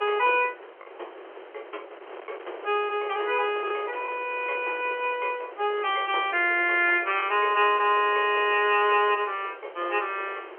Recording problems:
phone line; 320 Hz to 3.3 kHz, G.711
wind noise; below 1.3 kHz, SNR 19 dB
packet loss; 1.2% of the sound replaced, filled with the last packet

